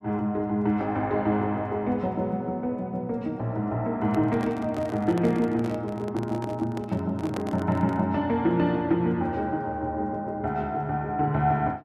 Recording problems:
microphone handling noise; from 4 to 8 s; peak -3 dB vs average level

